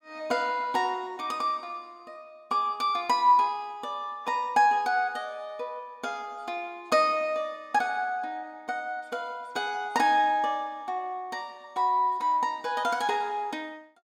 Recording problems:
none

